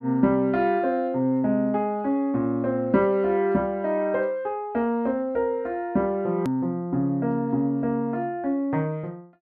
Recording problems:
edit click; at 6.5 s

